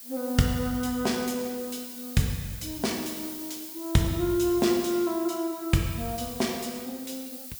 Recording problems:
hiss; SNR 11 dB

